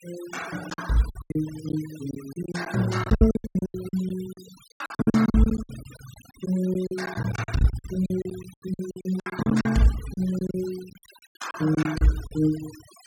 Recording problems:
denoising artefacts; signal-to-artefact ratio 16 dB
packet loss; 19% of the sound replaced, filled with silence

